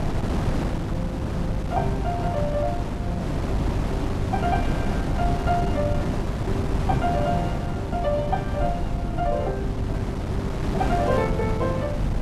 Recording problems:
electrical hum; 50 Hz, harmonics up to 700 Hz, SNR 4 dB
low-frequency rumble; below 100 Hz, SNR 8 dB
wind noise; below 370 Hz, SNR -1 dB

